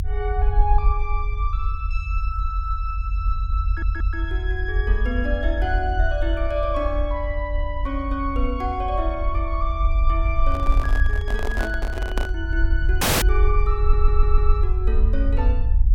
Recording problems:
low-frequency rumble; below 52 Hz, SNR -4 dB
stutter; at 3.5 s and at 14 s
microphone handling noise; from 10 to 12 s; peak +4 dB vs average level
dropout; at 13 s

